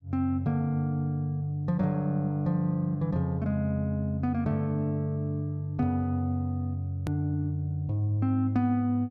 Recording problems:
click at an edit; at 7 s

